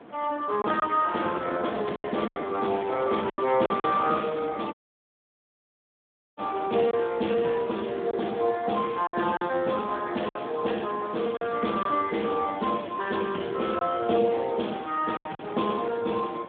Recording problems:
phone line; 170 Hz to 3.7 kHz, Speex
wind noise; below 1 kHz, SNR 16 dB
lost packets; 5% of the sound replaced, filled with silence
audio cutting out; at 4.5 s for 1.5 s

